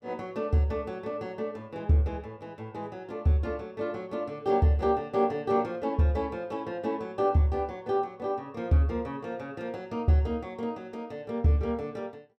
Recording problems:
none

